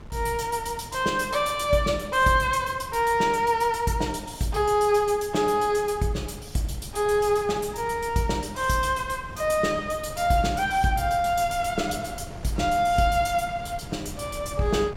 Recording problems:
wind noise; below 300 Hz, SNR 17 dB

